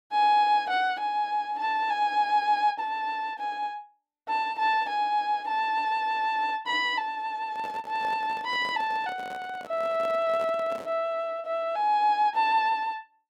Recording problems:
microphone handling noise; from 7.5 to 11 s; peak -10 dB vs average level

